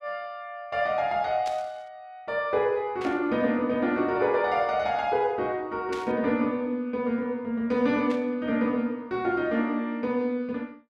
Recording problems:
static burst; 4 times, first at 1.5 s; peak -9 dB vs average level

